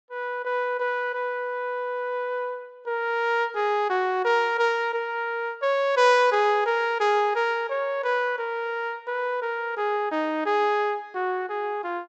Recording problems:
treble missing; nothing above 8 kHz

